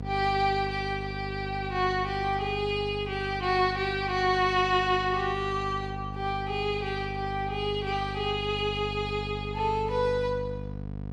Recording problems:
hum; 50 Hz, harmonics up to 750 Hz, SNR 9 dB

